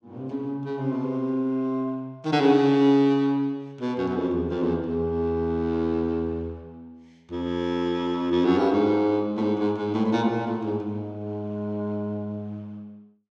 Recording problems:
none

